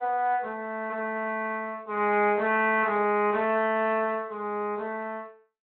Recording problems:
telephone audio; 260 Hz to 3.1 kHz, Speex

